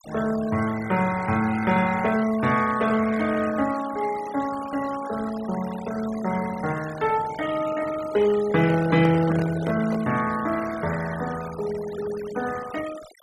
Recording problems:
noise reduction artefacts; signal-to-artefact ratio 15 dB
microphone handling noise; from 8.5 to 10 s; peak -4 dB vs average level

